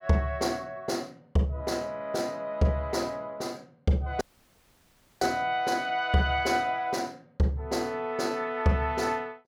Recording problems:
dropout; at 4 s for 1 s

